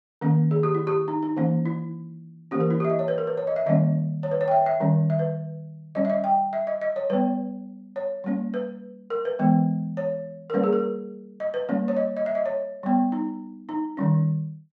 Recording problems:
none

